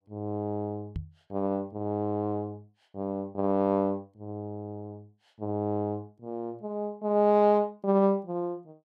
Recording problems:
knock on the microphone; at 1 s; peak -2 dB vs average level

